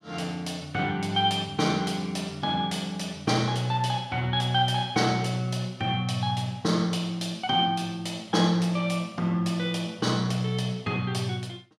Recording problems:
none

